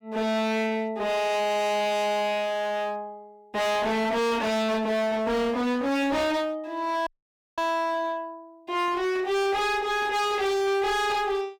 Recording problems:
distortion; hard clipping, uneven, signal-to-distortion ratio 6 dB
audio cutting out; at 7 s for 0.5 s

